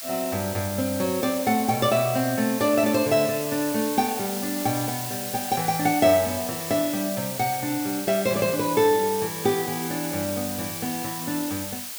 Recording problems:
background hiss; slope +2 dB per octave, SNR 7 dB

